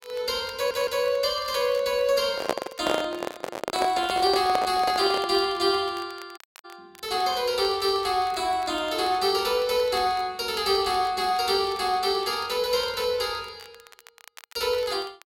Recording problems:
crackle; vinyl, SNR 24 dB
audio stuttering; at 0.5 s
handling noise; from 2.5 to 5.5 s; peak +4 dB vs average level
audio cutting out; at 6.5 s

